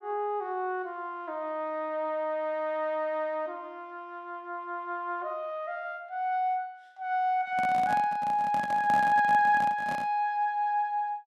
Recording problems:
handling noise; from 7.5 to 10 s; peak -4 dB vs average level

